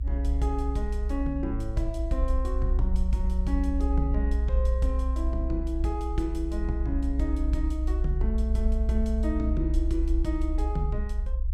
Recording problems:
low-frequency rumble; below 62 Hz, strongest tone 60 Hz, SNR -4 dB

